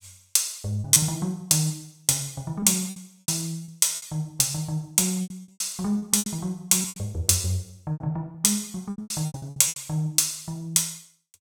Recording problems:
lost packets; 13% of the sound replaced, filled with repeated pitch periods

